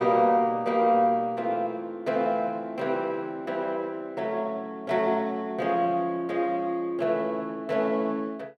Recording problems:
none

